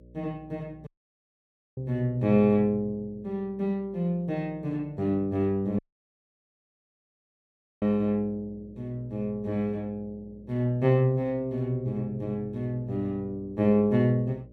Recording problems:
hum; 60 Hz, harmonics up to 600 Hz, SNR 25 dB
dropout; at 1 s for 1 s and at 6 s for 2 s

